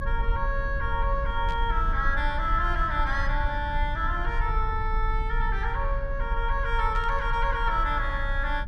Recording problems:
low-frequency rumble; below 50 Hz, strongest tone 30 Hz, SNR 3 dB
burst of static; at 1.5 s and at 7 s; peak -12 dB vs average level

